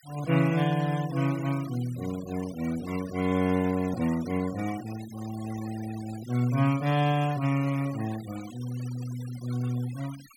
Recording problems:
noise reduction artefacts; signal-to-artefact ratio 17 dB

